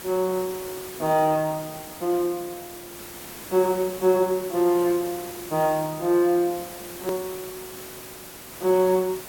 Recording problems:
background hiss; slope -3 dB per octave, SNR 14 dB
edit click; at 7 s

